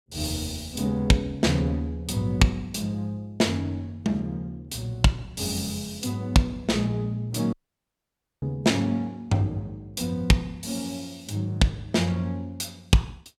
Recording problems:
dropout; at 7.5 s for 1 s

